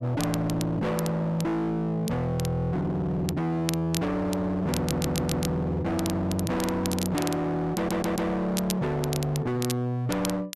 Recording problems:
distortion; hard clipping, uneven, signal-to-distortion ratio 6 dB
crackling; vinyl, SNR 11 dB
stutter; at 5 s and at 8 s

